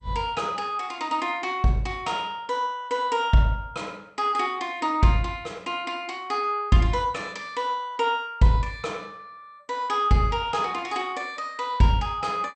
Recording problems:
codec artefacts; MP2, log-spectral distance 2 dB, nothing above 8 kHz

